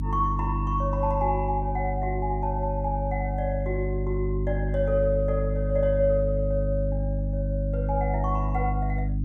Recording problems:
hum; 50 Hz, harmonics up to 300 Hz, SNR 0 dB

